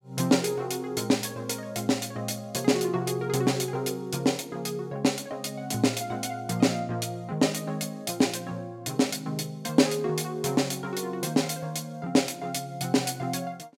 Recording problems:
none

